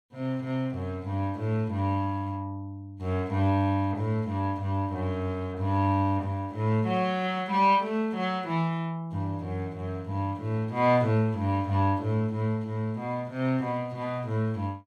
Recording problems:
none

